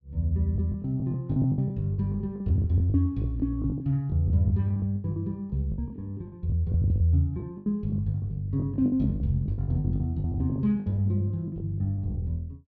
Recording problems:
lost packets; 17% of the sound replaced, filled with the last packet

